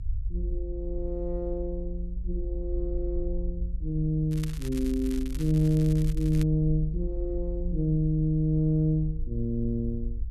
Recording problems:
rumble; below 52 Hz, strongest tone 50 Hz, SNR 7 dB
crackle; from 4.5 to 6.5 s; loose cable, SNR 18 dB

